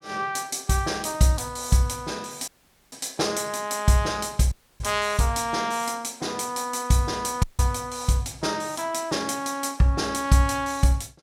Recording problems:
dropout; at 2.5 s, at 4.5 s and at 7.5 s

